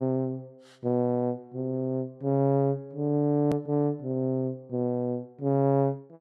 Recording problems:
hard cut with a click; at 3.5 s

